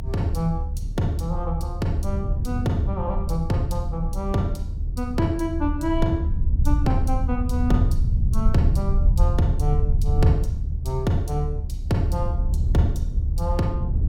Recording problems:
rumble; below 74 Hz, SNR 0 dB
wind on the microphone; below 110 Hz, SNR 6 dB

